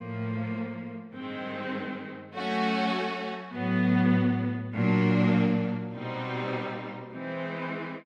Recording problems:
none

